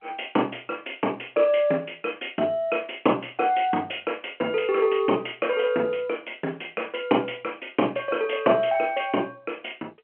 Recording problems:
telephone audio; 220 Hz to 3.1 kHz, G.711

